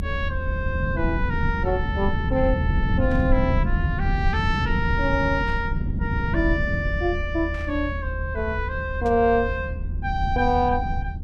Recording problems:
low-frequency rumble; below 130 Hz, SNR 2 dB
burst of static; 4 times, first at 3 s; peak -14 dB vs average level

